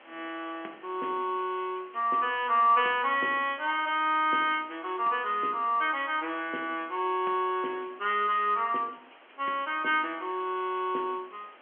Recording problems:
phone line; 220 Hz to 3.3 kHz, G.711
background hiss; SNR 25 dB

